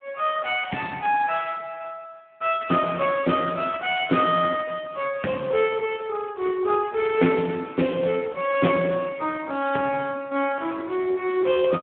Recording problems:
telephone audio; 190 Hz to 3.3 kHz, Speex

